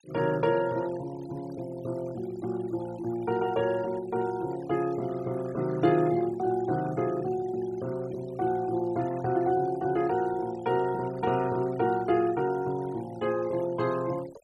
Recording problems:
noise reduction artefacts; signal-to-artefact ratio 20 dB

